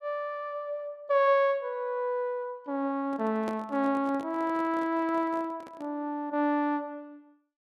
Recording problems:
handling noise; from 3 to 6 s; peak -5 dB vs average level

